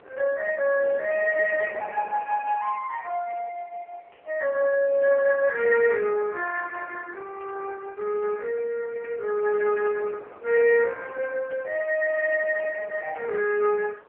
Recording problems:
phone line; 240 Hz to 3.1 kHz, AMR-NB
wind on the microphone; below 1 kHz, SNR 22 dB

